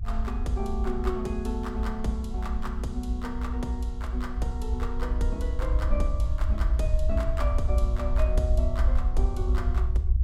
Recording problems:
low-frequency rumble; below 62 Hz, SNR -5 dB

